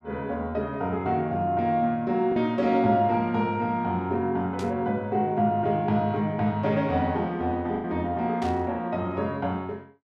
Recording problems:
packet loss; 1.2% of the sound replaced, filled with the last packet
burst of static; at 4.5 s and at 8.5 s; peak -11 dB vs average level

